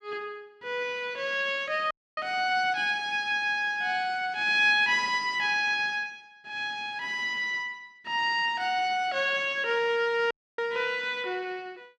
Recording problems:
audio cutting out; at 2 s and at 10 s

